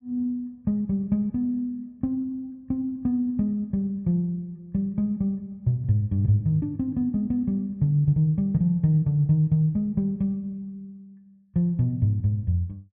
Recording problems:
none

